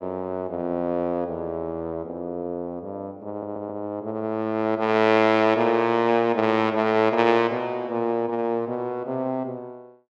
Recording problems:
audio stuttering; at 3.5 s

